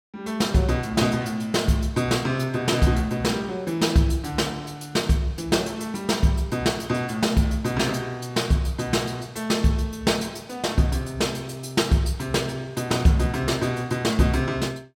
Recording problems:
none

